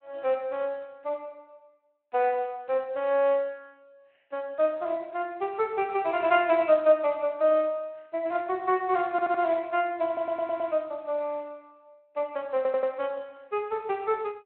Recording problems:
phone line; 340 Hz to 3.1 kHz, Speex
audio stuttering; at 9 s, at 10 s and at 13 s

